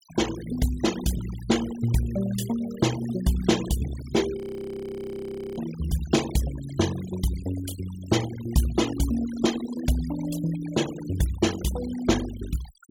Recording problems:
denoising artefacts; signal-to-artefact ratio 13 dB
frozen audio; at 4.5 s for 1 s

